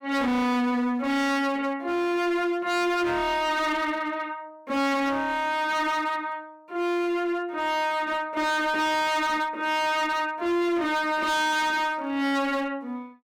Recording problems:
distortion; hard clipping, signal-to-distortion ratio 7 dB

